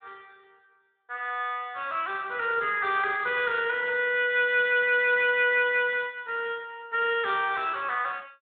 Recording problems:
phone line; 340 Hz to 3.9 kHz, Speex

